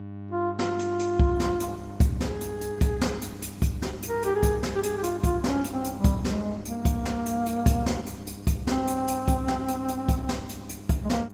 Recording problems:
codec artefacts; Opus, log-spectral distance 4 dB
hum; 50 Hz, harmonics up to 1.1 kHz, SNR 13 dB

